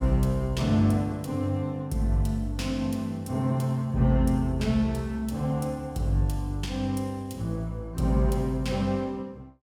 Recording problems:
none

